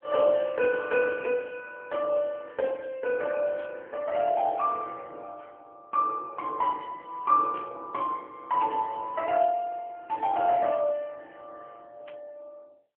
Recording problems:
telephone audio; 150 Hz to 3 kHz, AMR-NB
static burst; 5 times, first at 1 s; peak -16 dB vs average level

